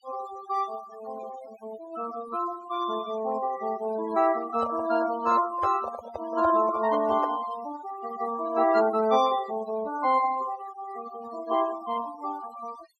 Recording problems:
denoising artefacts; signal-to-artefact ratio 15 dB
handling noise; from 4.5 to 7.5 s; peak -2 dB vs average level

